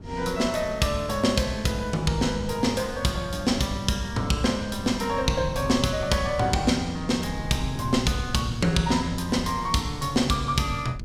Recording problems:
wind on the microphone; below 150 Hz, SNR 13 dB

